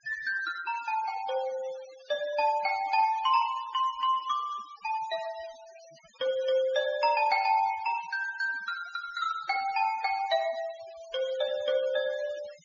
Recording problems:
low-pass filter; nothing above 6.9 kHz
denoising artefacts; signal-to-artefact ratio 18 dB

